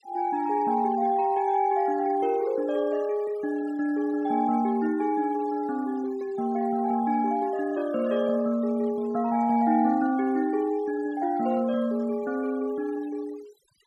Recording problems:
denoising artefacts; signal-to-artefact ratio 22 dB

